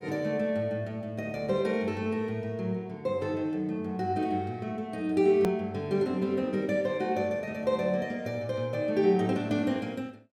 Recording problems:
edit click; at 5.5 s

